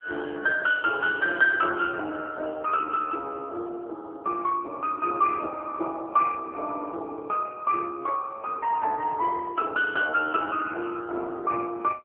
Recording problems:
phone line; 320 Hz to 3 kHz, AMR-NB

